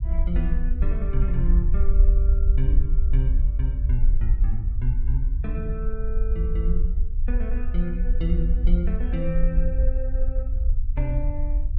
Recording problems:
rumble; below 52 Hz, SNR -7 dB

